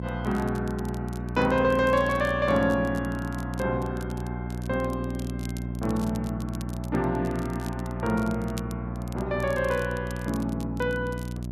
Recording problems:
hum; 60 Hz, harmonics up to 720 Hz, SNR 5 dB
crackling; vinyl, SNR 21 dB

